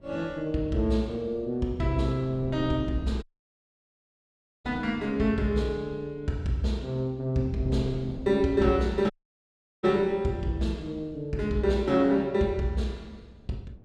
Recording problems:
wind noise; below 230 Hz, SNR 19 dB
audio cutting out; at 3 s for 1.5 s and at 9 s for 0.5 s

